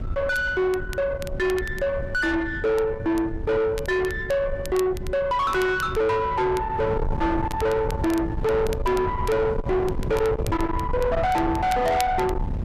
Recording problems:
distorted audio; soft clipping, signal-to-distortion ratio 6 dB
wind on the microphone; below 460 Hz, SNR 7 dB
crackling; vinyl, SNR 20 dB

